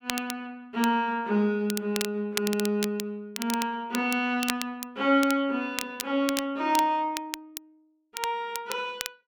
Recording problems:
crackle; vinyl, SNR 9 dB

